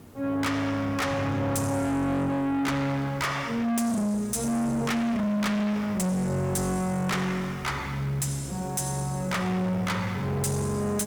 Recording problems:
distorted audio; soft clipping, signal-to-distortion ratio 6 dB
background hiss; slope -7 dB per octave, SNR 21 dB

